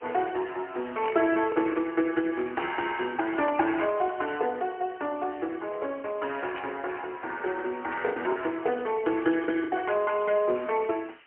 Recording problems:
telephone audio; 260 Hz to 3.1 kHz, AMR-NB, then MP3
background hiss; SNR 27 dB
lost packets; 3% of the sound replaced, filled with the last packet
burst of static; 4 times, first at 1 s; peak -6 dB vs average level

